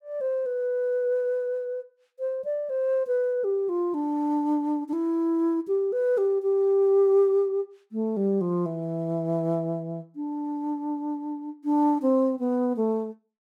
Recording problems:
none

